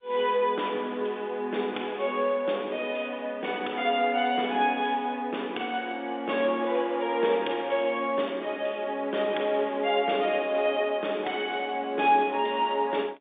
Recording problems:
phone line; 260 Hz to 3.6 kHz, G.711

